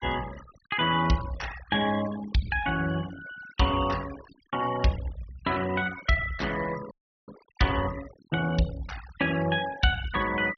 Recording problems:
low-pass filter; nothing above 6.1 kHz
noise reduction artefacts; signal-to-artefact ratio 15 dB
frozen audio; at 7 s

